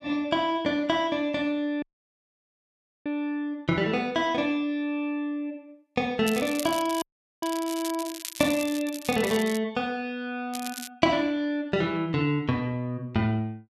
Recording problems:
audio cutting out; at 2 s for 1 s and at 7 s
crackle; from 6.5 to 9.5 s and at 11 s; loose cable, SNR 11 dB

